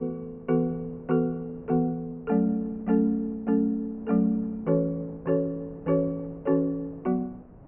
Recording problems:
treble missing; nothing above 3 kHz
wind noise; below 450 Hz, SNR 22 dB

